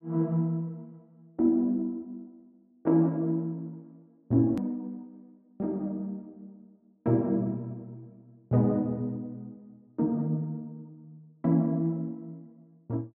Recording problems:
treble cut off; nothing above 4.3 kHz
edit click; at 4.5 s

